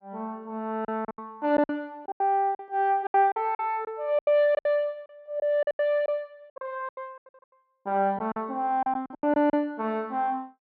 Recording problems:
lost packets; 14% of the sound replaced, filled with silence

